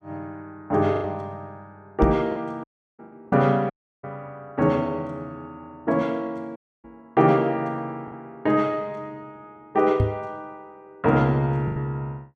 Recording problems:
packet loss; 3% of the sound replaced, filled with the last packet
knock on the microphone; at 2 s, at 7 s and at 10 s; peak +5 dB vs average level
dropout; at 2.5 s, at 3.5 s and at 6.5 s

